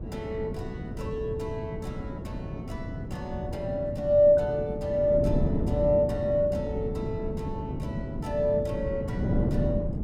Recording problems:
wind noise; below 260 Hz, SNR 5 dB

